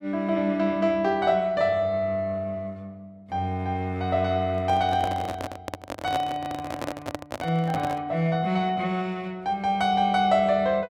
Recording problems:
microphone handling noise; from 4.5 to 8 s; peak -1 dB vs average level

